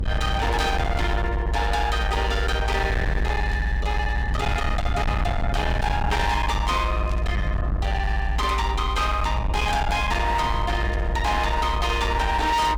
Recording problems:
distortion; hard clipping, signal-to-distortion ratio 7 dB
hum; 50 Hz, harmonics up to 1.1 kHz, SNR 21 dB
rumble; below 130 Hz, strongest tone 58 Hz, SNR 2 dB
static burst; at 3.5 s, at 7 s and at 11 s; peak -13 dB vs average level

